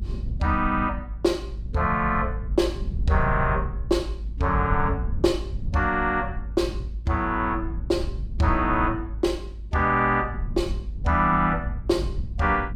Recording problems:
rumble; below 84 Hz, SNR 7 dB

